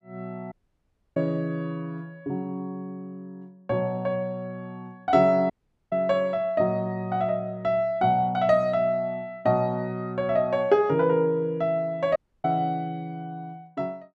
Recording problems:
dropout; at 0.5 s for 0.5 s, at 5.5 s and at 12 s

